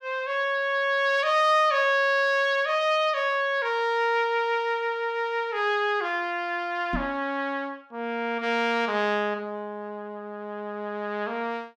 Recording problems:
microphone bump; at 7 s; peak -2 dB vs average level

